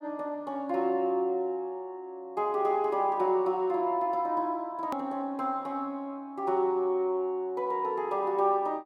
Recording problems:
hard cut with a click; at 5 s

